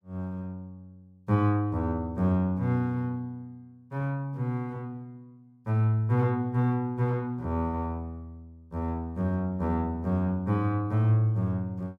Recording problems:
none

